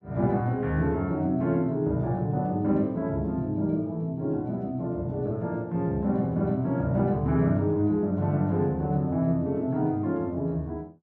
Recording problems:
none

